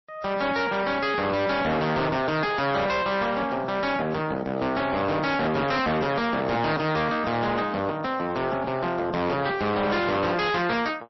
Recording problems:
lossy compression; MP3, log-spectral distance 4 dB, nothing above 5.7 kHz
distortion; hard clipping, uneven, signal-to-distortion ratio 5 dB

